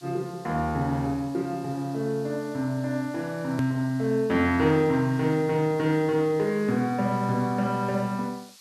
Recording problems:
hiss; slope +4 dB per octave, SNR 24 dB
click at an edit; at 3.5 s

